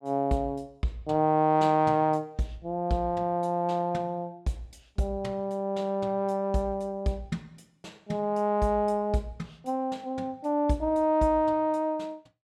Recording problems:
none

